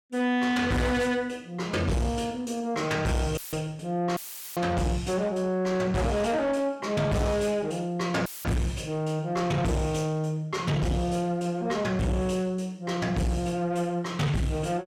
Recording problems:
distorted audio; soft clipping, signal-to-distortion ratio 7 dB
audio cutting out; at 3.5 s, at 4 s and at 8.5 s; filled with static

